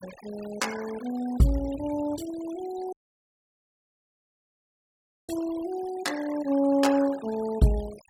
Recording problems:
noise reduction artefacts; signal-to-artefact ratio 18 dB
audio cutting out; at 3 s for 2.5 s

